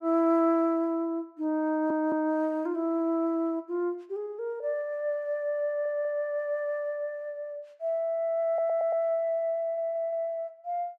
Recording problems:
audio stuttering; 4 times, first at 1.5 s

